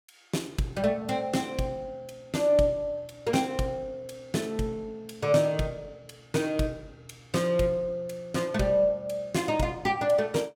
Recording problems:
none

